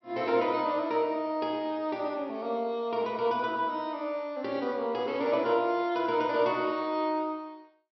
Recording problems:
treble missing; nothing above 5.8 kHz

